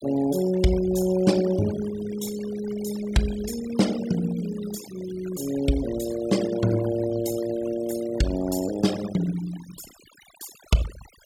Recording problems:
noise reduction artefacts; signal-to-artefact ratio 14 dB

